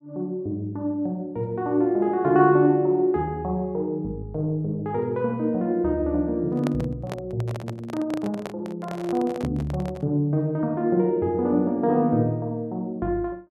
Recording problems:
handling noise; from 6.5 to 10 s; peak -4 dB vs average level

